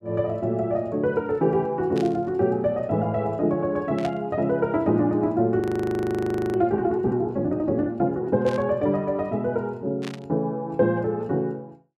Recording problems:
burst of static; 4 times, first at 2 s; peak -8 dB vs average level
audio freezing; at 5.5 s for 1 s

